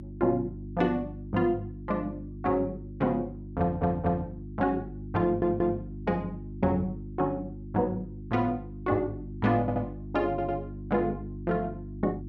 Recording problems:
hum; 50 Hz, harmonics up to 350 Hz, SNR 10 dB
audio stuttering; 4 times, first at 3.5 s

